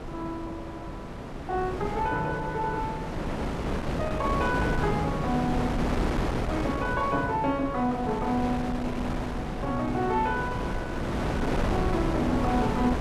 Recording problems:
wind noise; below 660 Hz, SNR 1 dB

